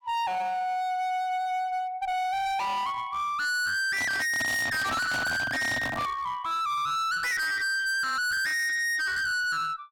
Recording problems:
distorted audio; hard clipping, uneven, signal-to-distortion ratio 5 dB
microphone handling noise; from 4 to 6 s; peak +1 dB vs average level

